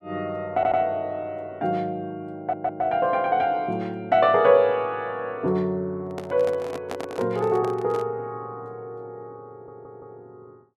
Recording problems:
audio stuttering; at 0.5 s, at 2.5 s and at 9.5 s
handling noise; from 6 to 8 s; peak -4 dB vs average level

